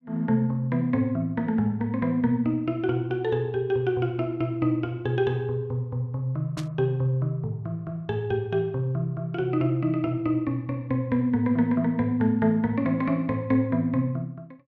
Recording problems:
static burst; at 6.5 s; peak -9 dB vs average level

